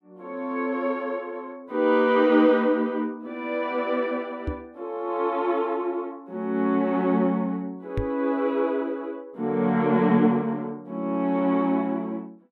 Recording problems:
microphone bump; at 4.5 s and at 8 s; peak 0 dB vs average level

